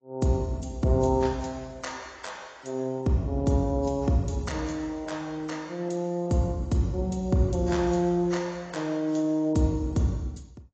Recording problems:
codec artefacts; AAC, log-spectral distance 3 dB, nothing above 7.6 kHz

